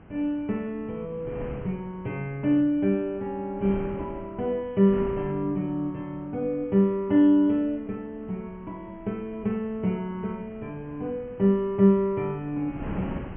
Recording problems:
treble missing; nothing above 3.2 kHz
wind on the microphone; below 410 Hz, SNR 17 dB

